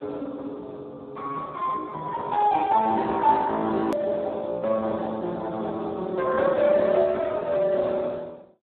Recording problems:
telephone audio; 240 Hz to 2.3 kHz, Speex
click at an edit; at 4 s

